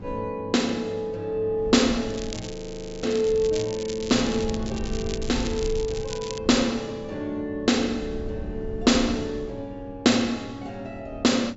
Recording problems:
treble missing; nothing above 8 kHz
mains hum; 50 Hz, harmonics up to 800 Hz, SNR 20 dB
wind on the microphone; below 110 Hz, SNR 14 dB
crackle; from 2 to 4.5 s and from 4.5 to 6.5 s; loose cable, SNR 14 dB
audio freezing; at 2.5 s for 0.5 s

